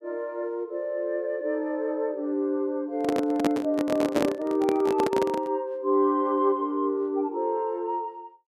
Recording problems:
handling noise; from 3 to 5.5 s; peak +4 dB vs average level

